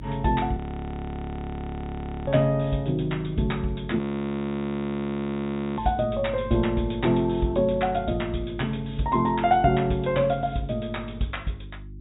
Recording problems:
treble missing; nothing above 4 kHz
mains hum; 50 Hz, harmonics up to 350 Hz, SNR 15 dB
audio freezing; at 0.5 s for 1.5 s and at 4 s for 2 s

